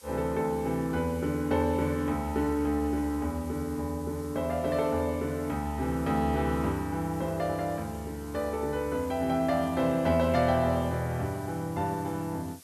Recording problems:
hiss; slope +1 dB per octave, SNR 22 dB

